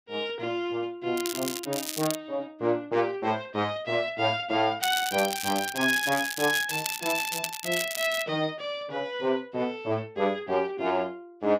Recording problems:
crackling; from 1 to 2 s and from 5 to 8 s; loose cable, SNR 5 dB

